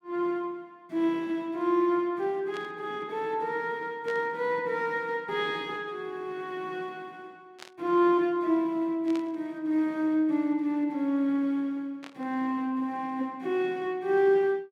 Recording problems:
static burst; 5 times, first at 2.5 s; peak -11 dB vs average level

